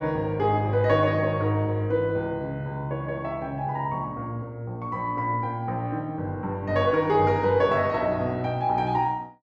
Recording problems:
none

